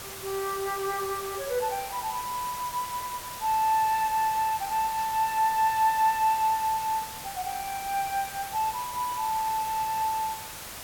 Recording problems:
background hiss; slope -1 dB per octave, SNR 10 dB

